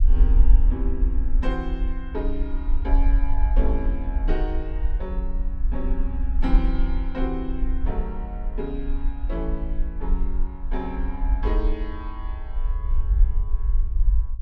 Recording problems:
low-frequency rumble; below 46 Hz, SNR -7 dB

